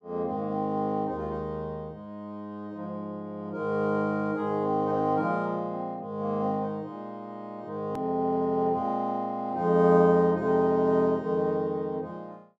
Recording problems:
edit click; at 8 s

